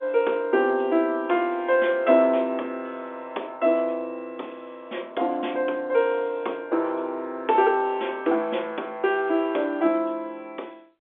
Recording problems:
telephone audio; 240 Hz to 3.6 kHz, G.711

